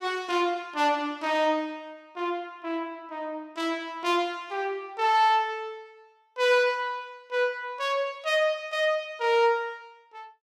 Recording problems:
none

